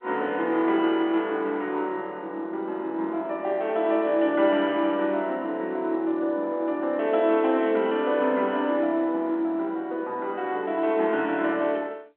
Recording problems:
telephone audio; 240 Hz to 3.9 kHz, G.711

